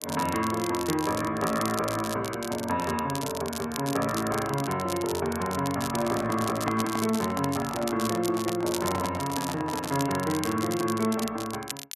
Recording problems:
crackle; vinyl, SNR 9 dB
microphone handling noise; from 6 to 10 s; peak +2 dB vs average level

